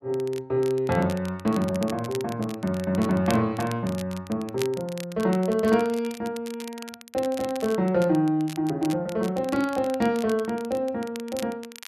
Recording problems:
crackle; vinyl, SNR 17 dB

